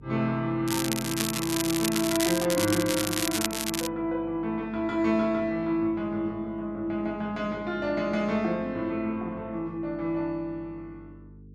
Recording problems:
electrical hum; 50 Hz, harmonics up to 450 Hz, SNR 21 dB
crackle; from 0.5 to 4 s; loose cable, SNR 2 dB

